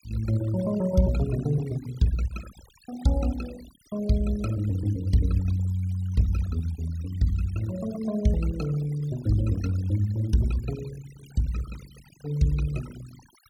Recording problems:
denoising artefacts; signal-to-artefact ratio 19 dB

